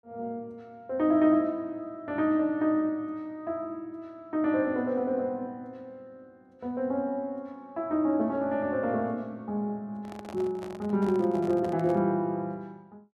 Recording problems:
handling noise; from 10 to 12 s; peak -9 dB vs average level

